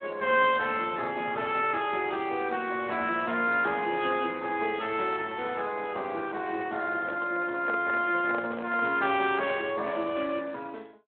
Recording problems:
phone line; 300 Hz to 3.5 kHz, Speex
microphone handling noise; from 7 to 9 s; peak -4 dB vs average level

